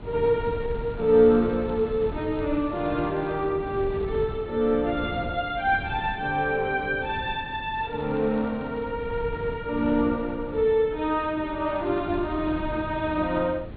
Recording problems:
treble missing; nothing above 4.3 kHz
wind noise; below 240 Hz, SNR 13 dB
crackle; from 0.5 to 3.5 s, from 7.5 to 9 s and at 12 s; loose cable, SNR 29 dB

